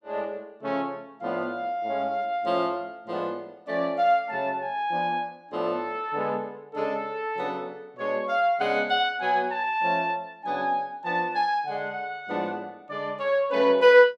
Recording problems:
none

